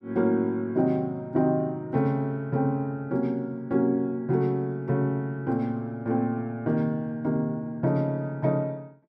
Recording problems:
none

